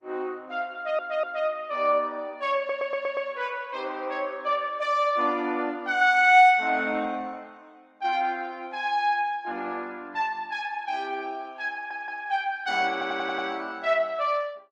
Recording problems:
codec artefacts; Opus, log-spectral distance 2 dB
stutter; 4 times, first at 1 s

